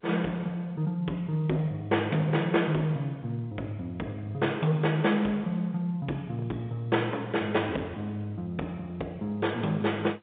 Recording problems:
telephone audio; 190 Hz to 3.7 kHz, G.711
distortion; hard clipping, signal-to-distortion ratio 17 dB

